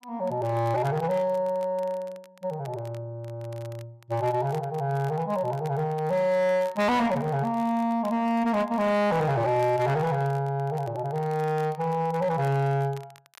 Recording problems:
distortion; hard clipping, signal-to-distortion ratio 12 dB
crackle; vinyl, SNR 26 dB

